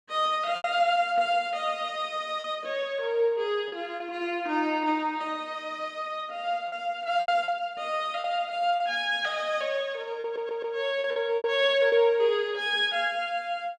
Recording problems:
lost packets; 5% of the sound replaced, filled with repeated pitch periods
stutter; at 10 s

